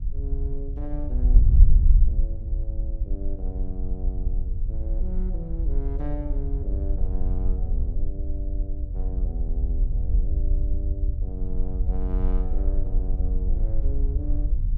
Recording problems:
wind on the microphone; below 56 Hz, SNR -12 dB

